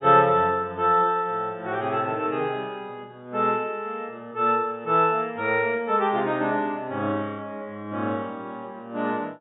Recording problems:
treble cut off; nothing above 4 kHz

